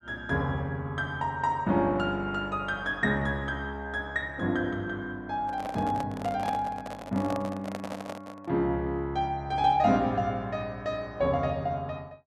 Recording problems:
microphone handling noise; from 5.5 to 8.5 s; peak -3 dB vs average level

